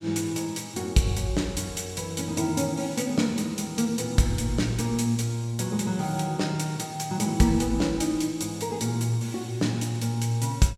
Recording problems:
none

